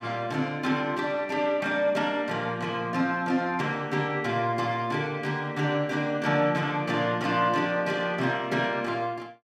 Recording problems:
none

